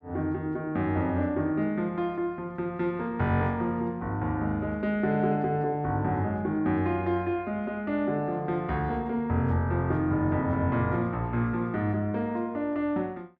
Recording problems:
none

